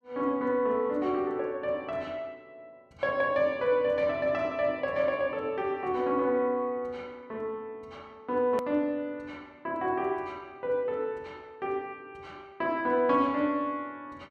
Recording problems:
click at an edit; at 8.5 s

